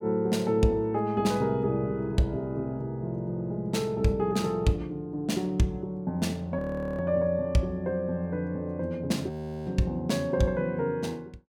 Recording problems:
frozen audio; at 6.5 s and at 9.5 s

